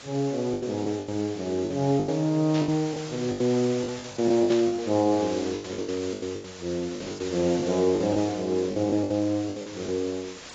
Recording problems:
lossy compression; AAC, log-spectral distance 10 dB
hiss; slope -1 dB per octave, SNR 14 dB
lost packets; 15% of the sound replaced, filled with the last packet
static burst; at 2.5 s and at 4.5 s; peak -6 dB vs average level

